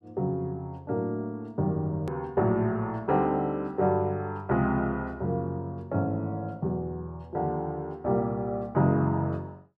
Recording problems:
hard cut with a click; at 2 s

